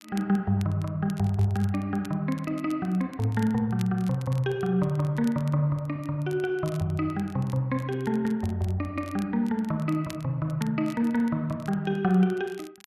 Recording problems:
crackle; vinyl, SNR 24 dB

